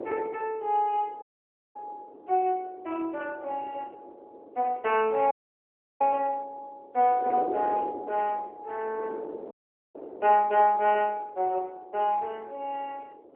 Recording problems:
phone line; 300 Hz to 3.5 kHz, AMR-NB
wind on the microphone; below 540 Hz, SNR 15 dB
dropout; at 1 s for 0.5 s, at 5.5 s for 0.5 s and at 9.5 s

